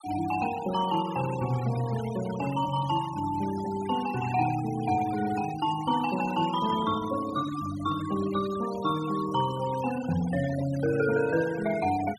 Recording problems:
denoising artefacts; signal-to-artefact ratio 14 dB

